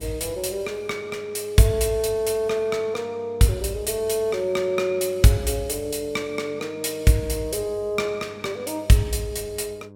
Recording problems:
hum; 50 Hz, harmonics up to 1.1 kHz, SNR 23 dB

